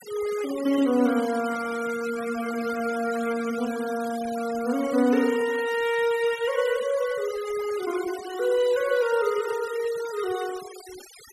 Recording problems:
noise reduction artefacts; signal-to-artefact ratio 16 dB

